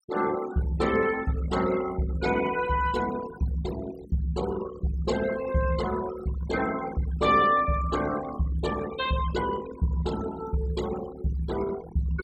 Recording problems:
denoising artefacts; signal-to-artefact ratio 14 dB

